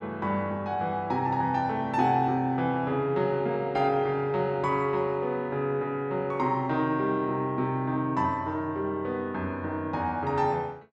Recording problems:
none

